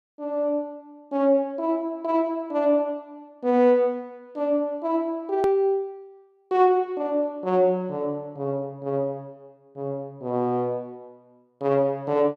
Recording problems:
edit click; at 5.5 s

